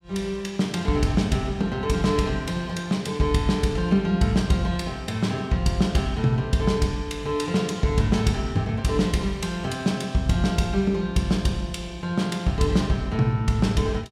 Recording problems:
none

